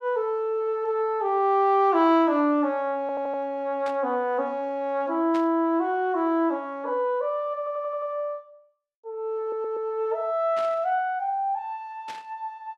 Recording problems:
stutter; at 3 s, at 7.5 s and at 9.5 s
static burst; 4 times, first at 4 s; peak -11 dB vs average level

